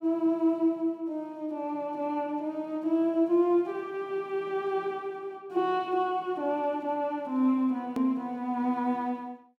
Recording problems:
hard cut with a click; at 8 s

